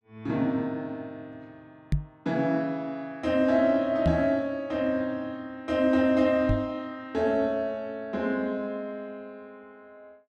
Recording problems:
microphone bump; at 2 s, at 4 s and at 6.5 s; peak +5 dB vs average level

